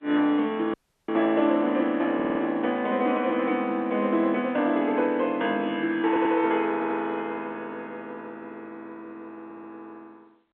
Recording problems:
phone line; 190 Hz to 3.6 kHz, G.711
audio cutting out; at 0.5 s
stutter; 4 times, first at 2 s

